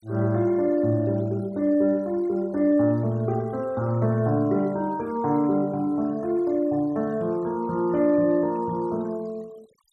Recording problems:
noise reduction artefacts; signal-to-artefact ratio 28 dB

